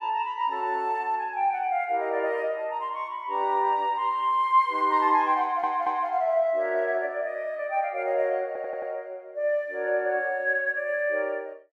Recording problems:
audio stuttering; at 5.5 s and at 8.5 s

